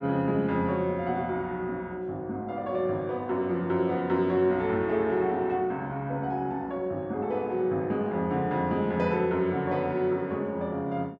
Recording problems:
none

